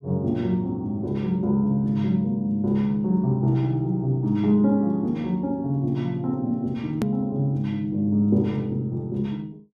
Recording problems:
hard cut with a click; at 7 s

